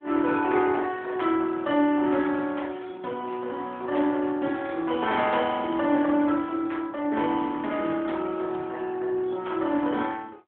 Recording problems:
phone line; 190 Hz to 3.4 kHz, AMR-NB

